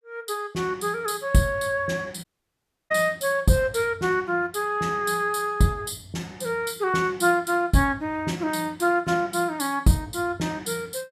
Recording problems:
audio cutting out; at 2 s for 0.5 s

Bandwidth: 14.5 kHz